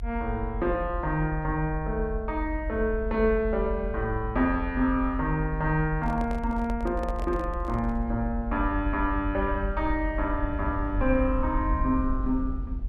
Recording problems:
rumble; below 64 Hz, strongest tone 40 Hz, SNR 6 dB
handling noise; from 6 to 8 s; peak -8 dB vs average level

